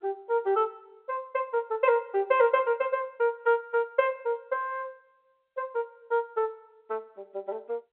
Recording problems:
phone line; 280 Hz to 3.7 kHz, G.711

